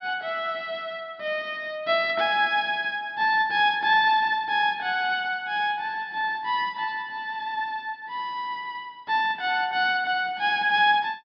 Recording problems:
treble missing; nothing above 5.5 kHz

